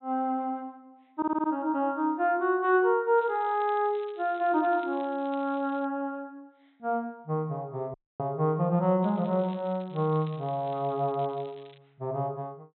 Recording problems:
low-pass filter; nothing above 4 kHz
audio stuttering; at 1 s
crackle; from 3 to 6 s and from 9 to 12 s; loose cable, SNR 27 dB
dropout; at 8 s

